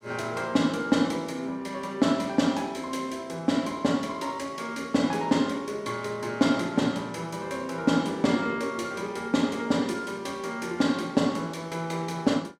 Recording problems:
none

